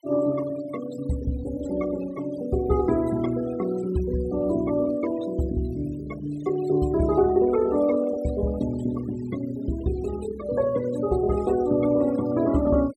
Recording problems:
denoising artefacts; signal-to-artefact ratio 18 dB

